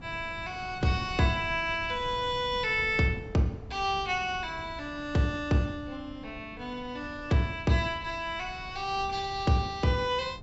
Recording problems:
low-pass filter; nothing above 8 kHz
wind noise; below 220 Hz, SNR 16 dB

